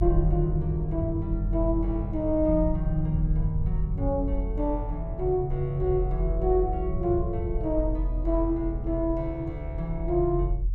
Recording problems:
rumble; below 62 Hz, strongest tone 44 Hz, SNR 4 dB

